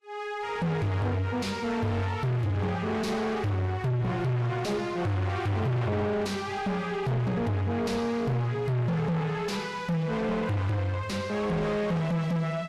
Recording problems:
lossy compression; Vorbis, log-spectral distance 2 dB, nothing above 13.1 kHz
distorted audio; soft clipping, signal-to-distortion ratio 6 dB

